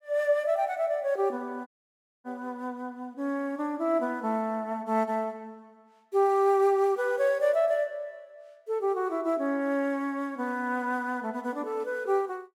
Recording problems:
dropout; at 1.5 s for 0.5 s

